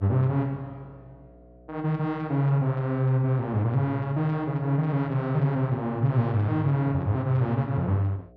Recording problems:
hum; 60 Hz, harmonics up to 720 Hz, SNR 28 dB

